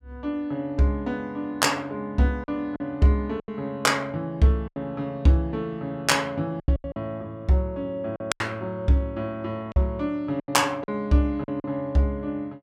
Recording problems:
lost packets; 6% of the sound replaced, filled with silence

